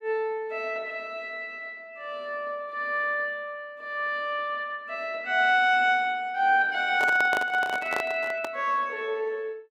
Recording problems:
microphone handling noise; from 7 to 8.5 s; peak 0 dB vs average level

